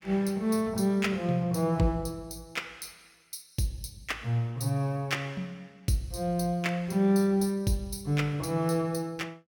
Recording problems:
none

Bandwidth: 17.5 kHz